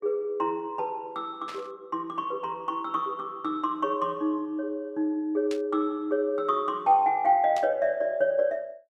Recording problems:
static burst; at 1.5 s, at 5.5 s and at 7.5 s; peak -8 dB vs average level

